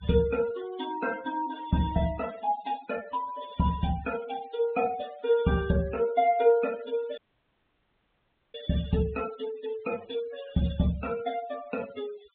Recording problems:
treble missing; nothing above 4 kHz
denoising artefacts; signal-to-artefact ratio 17 dB
audio cutting out; at 7 s for 1.5 s

